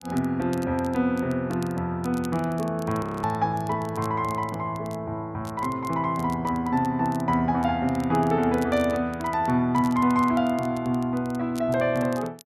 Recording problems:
crackling; vinyl, SNR 23 dB
frozen audio; at 3 s

